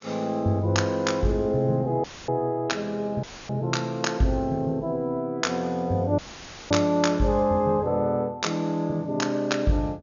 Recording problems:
low-pass filter; nothing above 6.9 kHz
dropout; at 2 s, at 3 s and at 6 s for 0.5 s; filled with static

